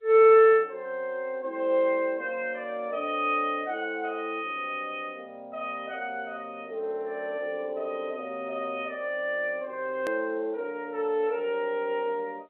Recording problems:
phone line; 280 Hz to 3.5 kHz, G.711
click at an edit; at 10 s

